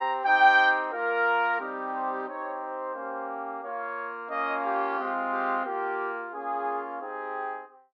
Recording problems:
none

